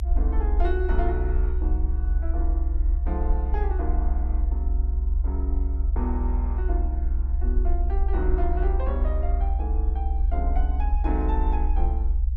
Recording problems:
low-frequency rumble; below 64 Hz, SNR -8 dB

